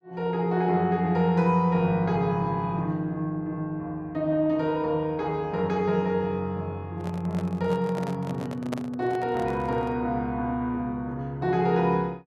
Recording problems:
microphone handling noise; from 7 to 10 s; peak -2 dB vs average level

